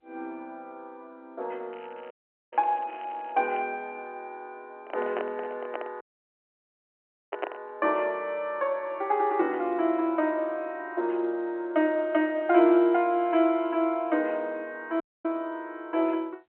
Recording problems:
phone line; 260 Hz to 3.2 kHz, G.711
crackle; from 1.5 to 3.5 s; loose cable, SNR 27 dB
dropout; at 2 s, at 6 s for 1.5 s and at 15 s
microphone handling noise; from 5 to 7.5 s; peak +1 dB vs average level

